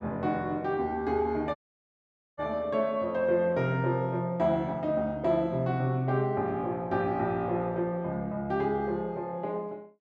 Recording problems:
audio cutting out; at 1.5 s for 1 s

